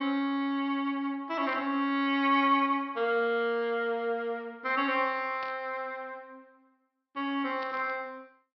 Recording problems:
treble missing; nothing above 5.5 kHz
static burst; at 1.5 s, at 5.5 s and at 7.5 s; peak -11 dB vs average level

